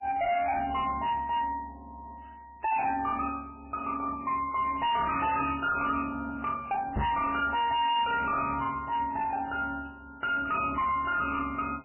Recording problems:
lossy compression; MP3, log-spectral distance 4 dB, nothing above 2.5 kHz
distorted audio; hard clipping, uneven, signal-to-distortion ratio 6 dB
microphone bump; at 7 s; peak +2 dB vs average level

